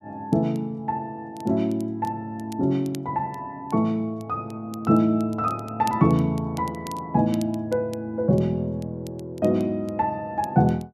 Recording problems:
crackle; vinyl, SNR 25 dB

